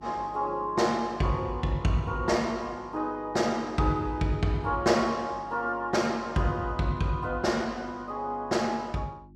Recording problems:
electrical hum; 50 Hz, harmonics up to 350 Hz, SNR 23 dB

